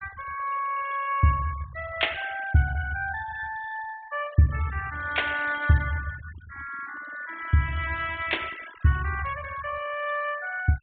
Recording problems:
treble missing; nothing above 4 kHz
denoising artefacts; signal-to-artefact ratio 17 dB

